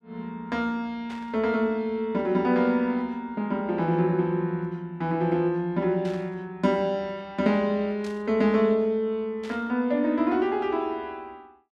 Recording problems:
burst of static; 4 times, first at 1 s; peak -14 dB vs average level

